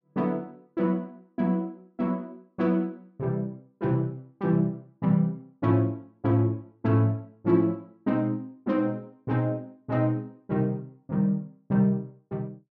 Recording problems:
none

